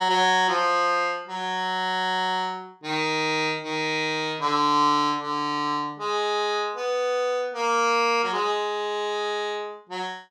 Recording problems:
none

